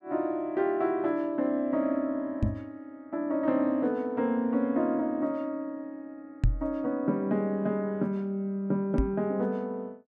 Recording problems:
microphone bump; at 2.5 s, at 6.5 s and at 9 s; peak +7 dB vs average level

